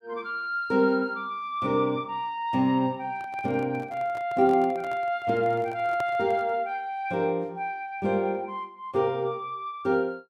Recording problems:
microphone handling noise; from 3 to 6.5 s; peak -6 dB vs average level

